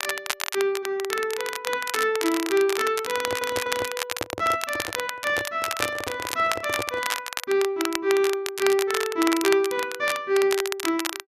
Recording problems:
crackling; vinyl, SNR 6 dB
handling noise; from 3 to 7 s; peak -1 dB vs average level
stutter; at 3 s

